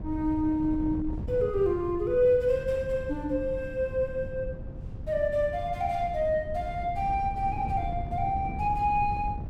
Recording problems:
wind noise; below 150 Hz, SNR 10 dB

